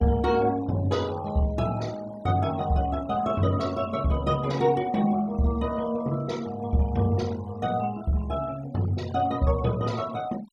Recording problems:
noise reduction artefacts; signal-to-artefact ratio 20 dB

